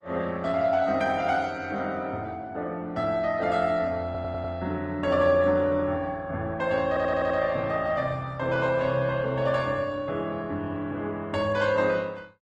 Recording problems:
codec artefacts; Opus, log-spectral distance 2 dB
stutter; at 4 s and at 7 s

